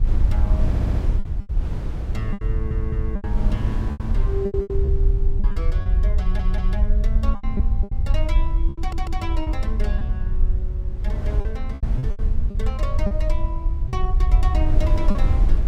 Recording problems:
rumble; below 60 Hz, SNR -8 dB
wind noise; below 150 Hz, SNR 0 dB
lost packets; 10% of the sound replaced, filled with repeated pitch periods
audio stuttering; 4 times, first at 0.5 s

